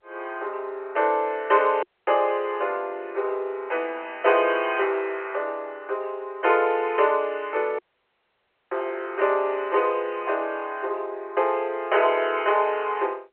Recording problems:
phone line; 320 Hz to 3.1 kHz, G.711
dropout; at 2 s and at 8 s for 1 s

